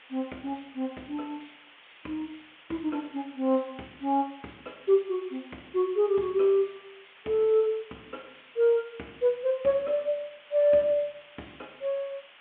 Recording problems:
phone line; 280 Hz to 3.4 kHz, G.726
background hiss; SNR 23 dB

